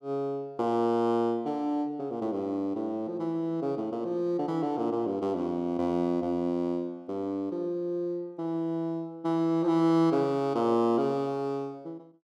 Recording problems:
none

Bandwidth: 13.5 kHz